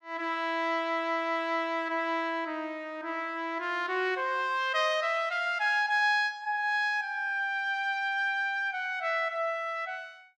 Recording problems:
none

